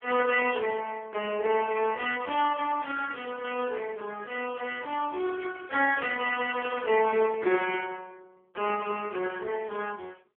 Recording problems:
telephone audio; 300 Hz to 3.2 kHz, AMR-NB

